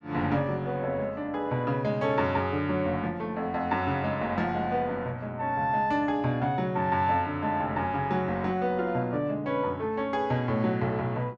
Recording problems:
none

